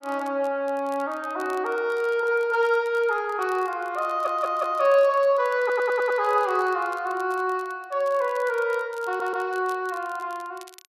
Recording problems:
crackling; vinyl, SNR 27 dB
stutter; at 4 s, at 5.5 s and at 9 s

